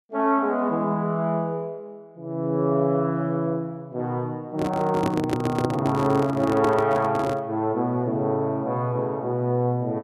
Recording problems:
handling noise; from 4.5 to 7.5 s; peak +3 dB vs average level

